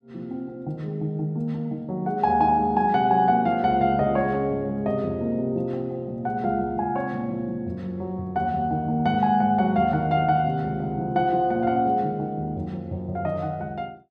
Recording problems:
none

